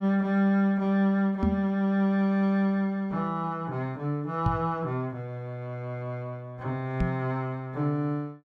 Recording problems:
microphone bump; at 1.5 s, at 4.5 s and at 7 s; peak +6 dB vs average level

